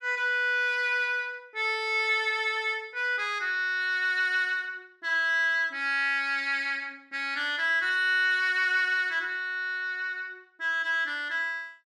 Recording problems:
none

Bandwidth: 13 kHz